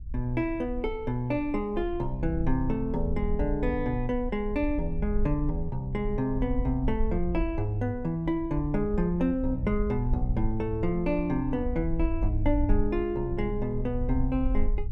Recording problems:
low-frequency rumble; below 54 Hz, strongest tone 24 Hz, SNR 6 dB

